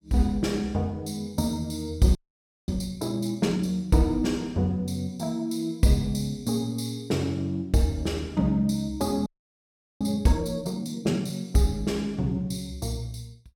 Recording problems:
frozen audio; at 2 s for 0.5 s and at 9.5 s for 1 s

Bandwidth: 16.5 kHz